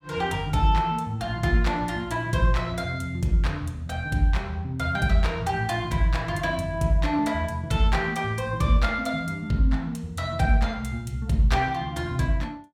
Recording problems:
none

